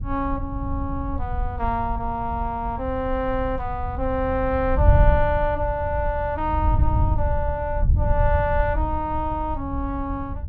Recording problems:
wind on the microphone; below 90 Hz, SNR 1 dB

